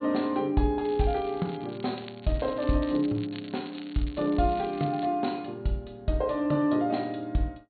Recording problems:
treble cut off; nothing above 4.4 kHz
crackle; from 1 to 5 s; loose cable, SNR 20 dB

